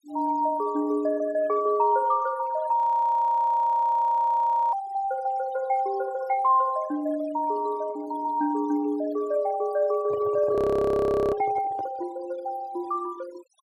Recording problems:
noise reduction artefacts; signal-to-artefact ratio 21 dB
audio freezing; at 3 s for 2 s and at 11 s for 1 s
handling noise; from 10 to 12 s; peak -8 dB vs average level

